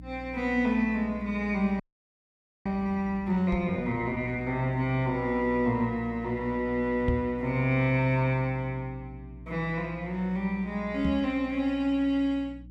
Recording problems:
hum; 60 Hz, harmonics up to 300 Hz, SNR 16 dB
frozen audio; at 2 s for 1 s
microphone bump; at 3.5 s, at 7 s and at 11 s; peak +3 dB vs average level

